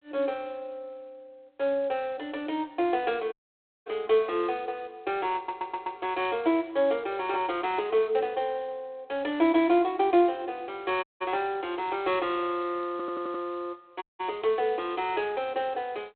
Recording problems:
phone line; 280 Hz to 3.7 kHz, G.726
dropout; at 3.5 s for 0.5 s, at 11 s and at 14 s
audio stuttering; at 5.5 s and at 13 s

